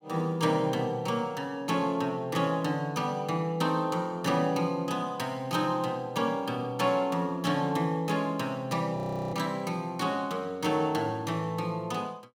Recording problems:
audio freezing; at 9 s

